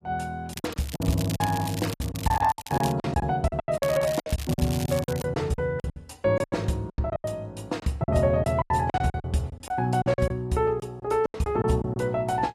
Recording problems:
lossy codec; AAC, log-spectral distance 3 dB, nothing above 14.7 kHz
packet loss; 16% of the sound replaced, filled with silence
crackling; from 0.5 to 3 s and from 4 to 5 s; loose cable, SNR 13 dB

